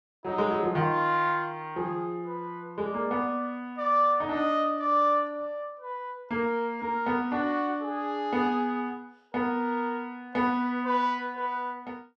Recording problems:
none

